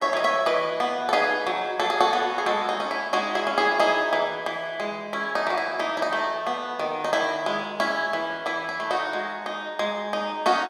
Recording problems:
none

